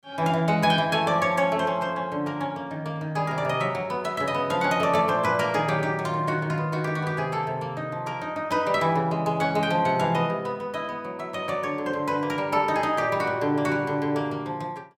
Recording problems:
none

